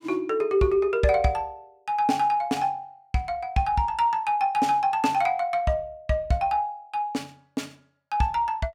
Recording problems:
none

